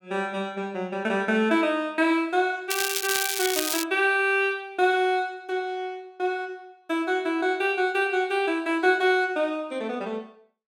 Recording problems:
crackle; from 2.5 to 4 s; loose cable, SNR 2 dB

